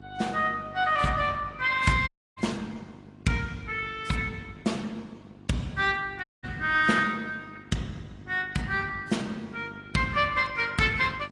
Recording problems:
lossy codec; Opus, then AAC, log-spectral distance 4 dB, nothing above 10.1 kHz
hum; 50 Hz, harmonics up to 1.1 kHz, SNR 21 dB
audio cutting out; at 2 s and at 6 s

